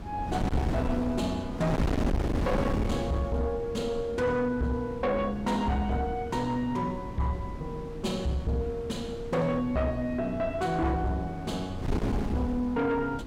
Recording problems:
distortion; soft clipping, signal-to-distortion ratio 7 dB
wind noise; below 340 Hz, SNR 5 dB

